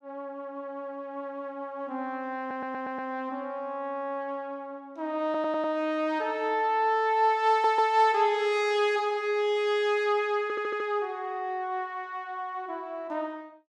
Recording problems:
audio stuttering; 4 times, first at 2.5 s

